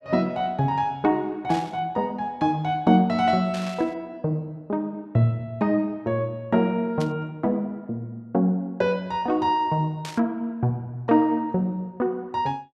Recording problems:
static burst; 4 times, first at 1.5 s; peak -8 dB vs average level

